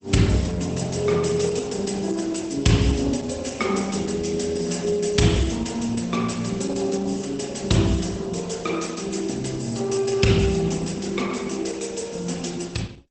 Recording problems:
lossy compression; Opus, log-spectral distance 6 dB, nothing above 8.2 kHz

